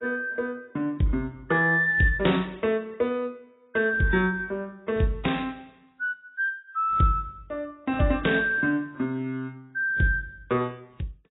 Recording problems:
lossy codec; AAC, log-spectral distance 2 dB, nothing above 3.8 kHz

